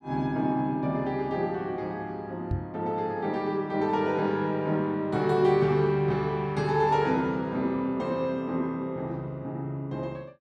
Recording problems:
knock on the microphone; at 2.5 s; peak +1 dB vs average level

